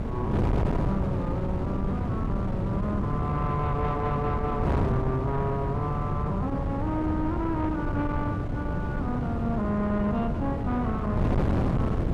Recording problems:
distortion; soft clipping, signal-to-distortion ratio 10 dB
wind noise; below 290 Hz, SNR -1 dB

